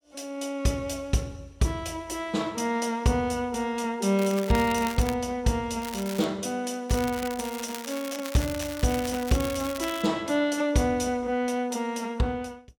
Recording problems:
crackling; at 4 s, at 6 s and from 7 to 10 s; loose cable, SNR 11 dB

